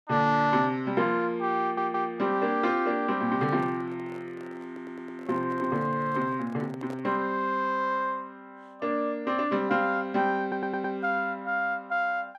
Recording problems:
stutter; at 1.5 s, at 4.5 s and at 10 s
microphone handling noise; from 3.5 to 7 s; peak -11 dB vs average level

